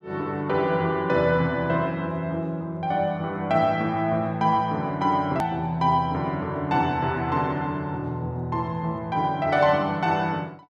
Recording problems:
hard cut with a click; at 5.5 s

